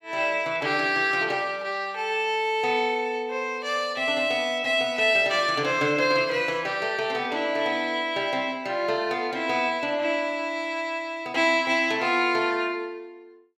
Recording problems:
none

